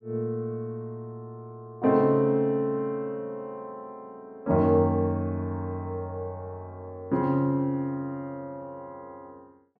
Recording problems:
none

